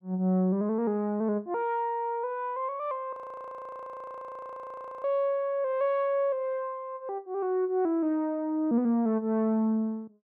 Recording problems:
audio freezing; at 3 s for 2 s

